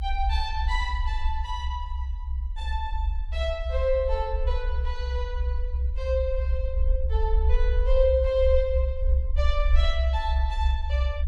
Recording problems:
rumble; below 66 Hz, SNR -2 dB

